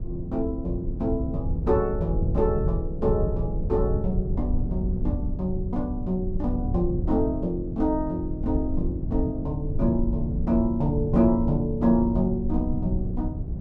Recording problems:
low-frequency rumble; below 110 Hz, SNR 3 dB

